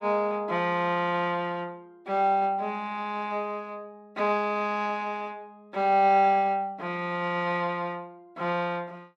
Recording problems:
none

